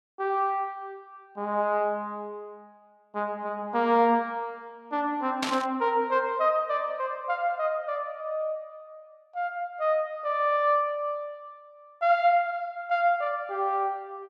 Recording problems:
static burst; at 5.5 s; peak +2 dB vs average level

